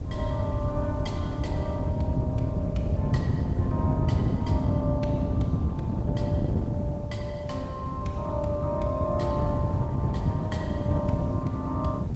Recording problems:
treble missing; nothing above 7.8 kHz
lossy compression; Opus, log-spectral distance 2 dB
background hiss; slope -4 dB per octave, SNR 26 dB
wind on the microphone; below 170 Hz, SNR -6 dB

